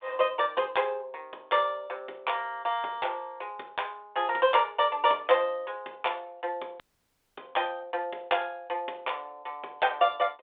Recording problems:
phone line; 300 Hz to 3.7 kHz, G.726
dropout; at 7 s for 0.5 s

